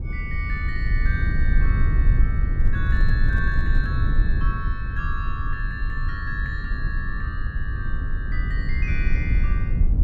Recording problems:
low-frequency rumble; below 70 Hz, SNR -8 dB
handling noise; from 2.5 to 4 s; peak -8 dB vs average level

